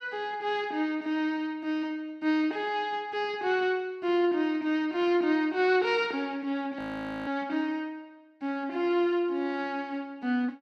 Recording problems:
audio freezing; at 7 s

